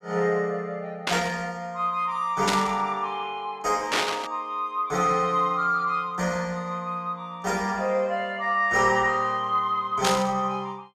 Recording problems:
static burst; 4 times, first at 1 s; peak +5 dB vs average level

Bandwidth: 14.5 kHz